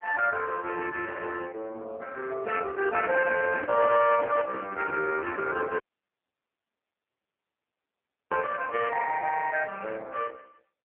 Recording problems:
phone line; 240 Hz to 2.3 kHz, AMR-NB
microphone handling noise; from 3 to 6 s; peak -4 dB vs average level
dropout; at 6 s for 2.5 s

